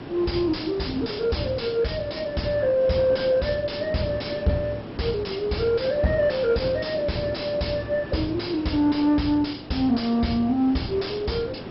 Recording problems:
lossy compression; MP2, log-spectral distance 6 dB, nothing above 5.3 kHz
distortion; soft clipping, signal-to-distortion ratio 6 dB
background hiss; slope -8 dB per octave, SNR 13 dB

